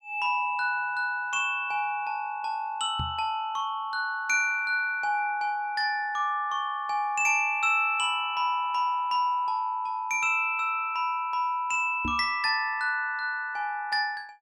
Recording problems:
microphone thump; at 3 s and at 12 s; peak -3 dB vs average level

